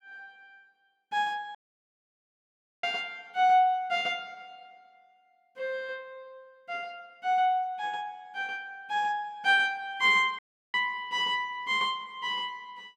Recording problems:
audio cutting out; at 1.5 s for 1.5 s and at 10 s

